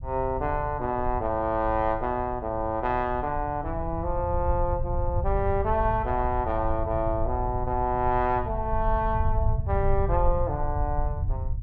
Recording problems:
rumble; below 90 Hz, SNR 5 dB

